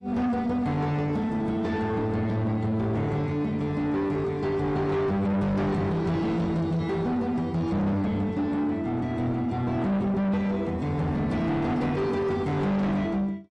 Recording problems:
lossy compression; AAC, log-spectral distance 2 dB, nothing above 10.7 kHz
distorted audio; soft clipping, signal-to-distortion ratio 6 dB

